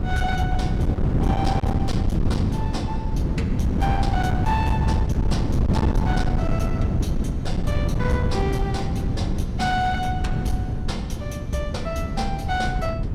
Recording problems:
distorted audio; hard clipping, signal-to-distortion ratio 12 dB
wind noise; below 200 Hz, SNR -4 dB

